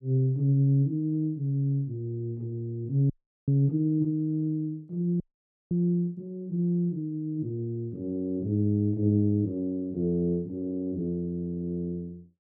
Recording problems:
audio freezing; at 3 s and at 5 s for 0.5 s

